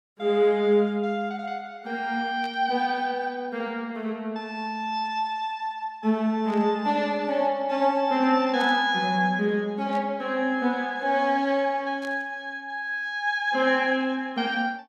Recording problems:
static burst; 5 times, first at 2.5 s; peak -14 dB vs average level

